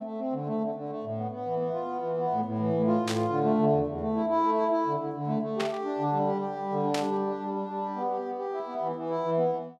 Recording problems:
burst of static; at 3 s, at 5.5 s and at 7 s; peak 0 dB vs average level

